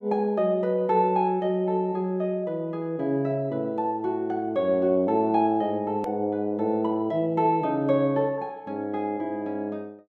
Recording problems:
edit click; at 6 s

